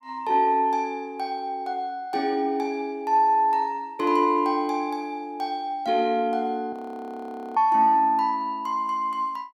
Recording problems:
frozen audio; at 6.5 s for 1 s

